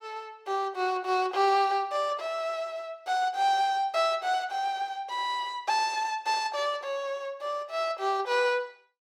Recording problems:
none

